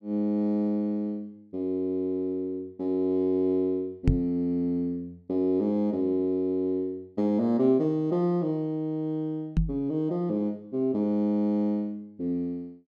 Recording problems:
knock on the microphone; at 4 s and at 9.5 s; peak +8 dB vs average level

